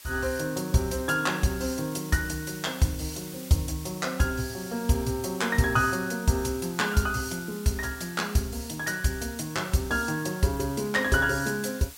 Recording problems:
hiss; slope +2 dB per octave, SNR 16 dB

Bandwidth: 16 kHz